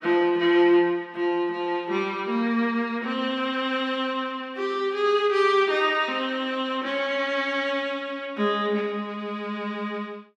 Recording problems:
none

